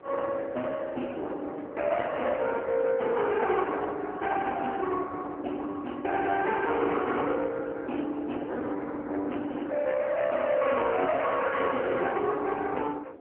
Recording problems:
phone line; 260 Hz to 3.2 kHz, AMR-NB
distortion; soft clipping, signal-to-distortion ratio 11 dB
wind noise; below 660 Hz, SNR 19 dB

